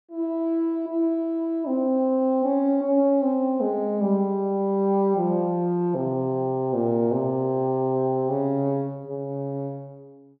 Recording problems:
treble cut off; nothing above 5.5 kHz

